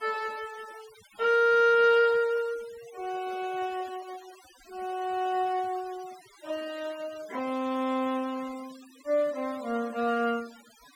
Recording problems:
noise reduction artefacts; signal-to-artefact ratio 22 dB

